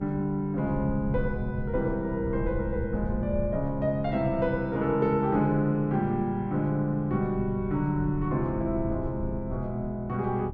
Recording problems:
hum; 60 Hz, harmonics up to 1 kHz, SNR 20 dB
rumble; below 110 Hz, SNR 11 dB

